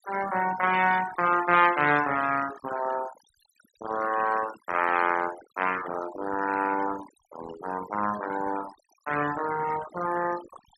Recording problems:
noise reduction artefacts; signal-to-artefact ratio 11 dB

